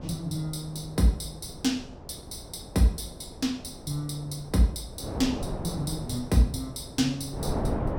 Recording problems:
wind noise; below 510 Hz, SNR 9 dB

